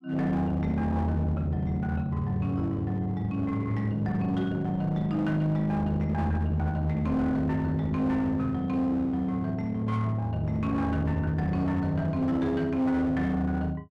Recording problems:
distorted audio; hard clipping, uneven, signal-to-distortion ratio 9 dB

